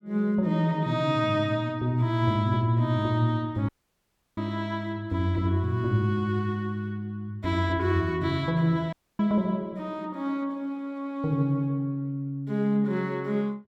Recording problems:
dropout; at 3.5 s for 0.5 s and at 9 s

